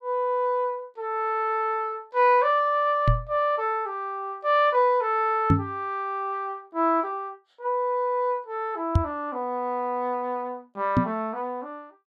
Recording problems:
knock on the microphone; 4 times, first at 3 s; peak +8 dB vs average level

